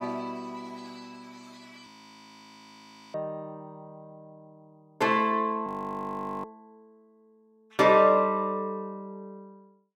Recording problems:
frozen audio; at 2 s for 1.5 s and at 5.5 s for 1 s

